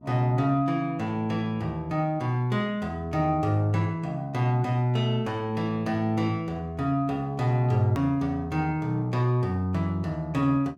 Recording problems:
electrical hum; 60 Hz, harmonics up to 720 Hz, SNR 26 dB
edit click; at 8 s

